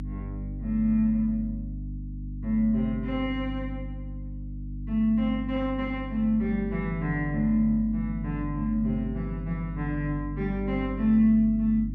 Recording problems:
mains hum; 50 Hz, harmonics up to 300 Hz, SNR 9 dB

